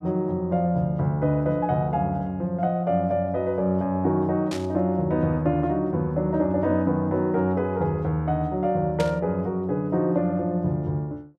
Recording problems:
burst of static; at 4.5 s and at 9 s; peak -5 dB vs average level

